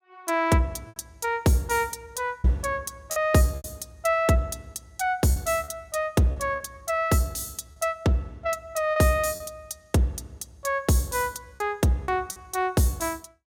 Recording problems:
packet loss; 5% of the sound replaced, filled with repeated pitch periods

